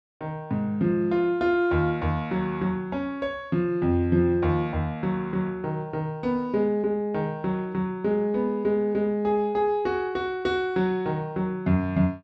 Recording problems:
none

